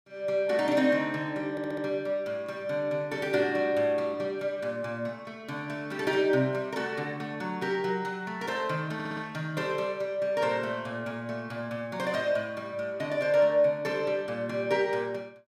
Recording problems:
stutter; at 1.5 s and at 9 s

